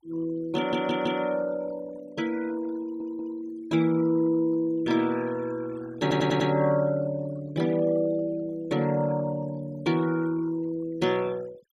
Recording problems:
denoising artefacts; signal-to-artefact ratio 21 dB
audio stuttering; at 0.5 s, at 3 s and at 6 s

